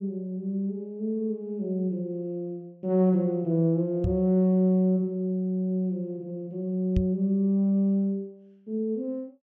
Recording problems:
microphone bump; at 4 s and at 7 s; peak +4 dB vs average level

